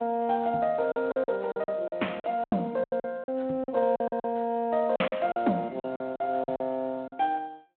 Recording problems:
phone line; 190 Hz to 3.6 kHz, Speex
lost packets; 14% of the sound replaced, filled with silence

